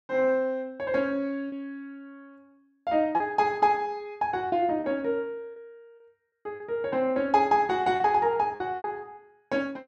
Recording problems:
packet loss; 5% of the sound replaced, filled with repeated pitch periods

